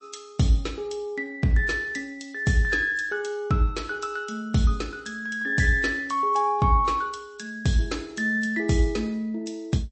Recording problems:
lossy compression; MP3, log-spectral distance 3 dB, nothing above 8.2 kHz

